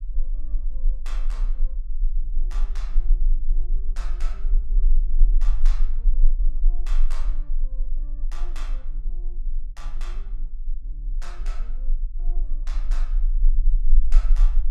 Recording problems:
rumble; below 32 Hz, strongest tone 22 Hz, SNR -21 dB

